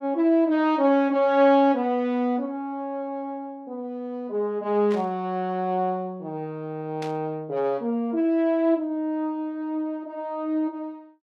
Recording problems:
static burst; at 5 s and at 7 s; peak -11 dB vs average level

